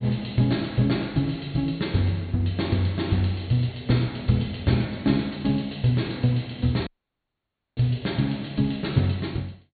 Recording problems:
treble missing; nothing above 4.4 kHz
dropout; at 7 s for 1 s

